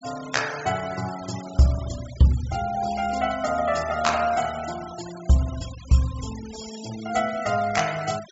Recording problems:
low-pass filter; nothing above 8 kHz
noise reduction artefacts; signal-to-artefact ratio 15 dB

